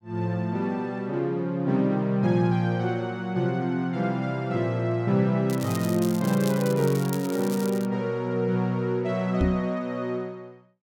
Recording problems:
crackling; from 5.5 to 8 s; loose cable, SNR 14 dB
microphone bump; at 9.5 s; peak +5 dB vs average level

